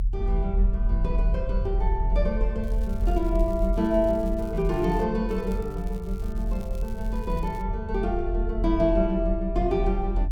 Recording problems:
rumble; below 46 Hz, strongest tone 40 Hz, SNR 2 dB
crackling; from 2.5 to 5 s and from 5.5 to 7.5 s; loose cable, SNR 26 dB

